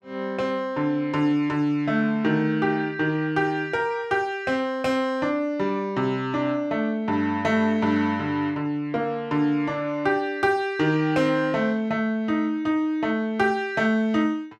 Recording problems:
none

